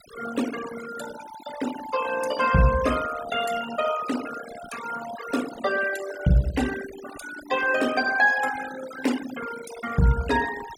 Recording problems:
noise reduction artefacts; signal-to-artefact ratio 11 dB

